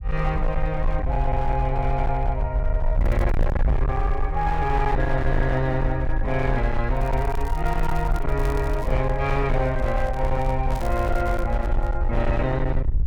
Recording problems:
distorted audio; hard clipping, signal-to-distortion ratio 8 dB
rumble; below 60 Hz, SNR 1 dB
crackle; at 3 s, from 7 to 9 s and at 11 s; loose cable, SNR 22 dB
microphone handling noise; from 8.5 to 12 s; peak -7 dB vs average level

